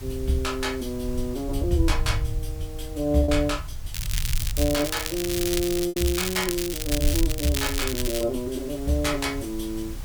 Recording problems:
hiss; slope -2 dB per octave, SNR 19 dB
rumble; below 80 Hz, SNR 7 dB
lost packets; 1.3% of the sound replaced, filled with repeated pitch periods
crackling; from 4 to 8 s; loose cable, SNR 4 dB

